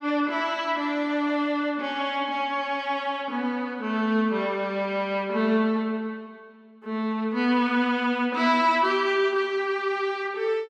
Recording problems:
none

